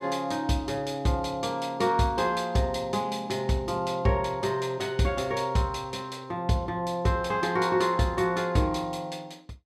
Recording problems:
none

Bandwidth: 14.5 kHz